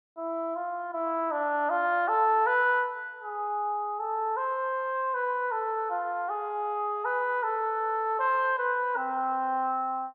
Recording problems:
none

